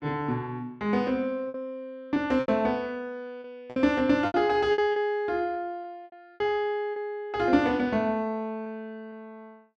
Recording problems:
lost packets; 7% of the sound replaced, filled with repeated pitch periods

